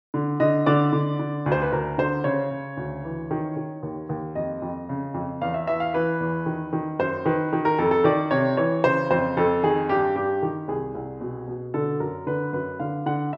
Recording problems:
none

